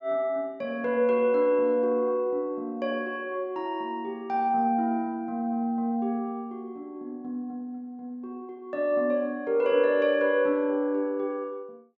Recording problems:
treble missing; nothing above 8 kHz

